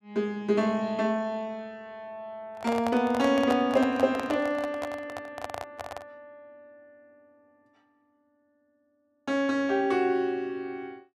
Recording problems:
microphone handling noise; from 2.5 to 6 s; peak -1 dB vs average level

